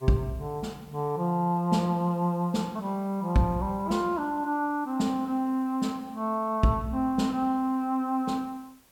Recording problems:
background hiss; slope -2 dB per octave, SNR 29 dB

